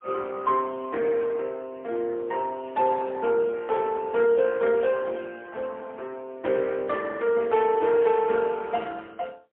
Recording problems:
telephone audio; 300 Hz to 3.6 kHz, AMR-NB, then MP3

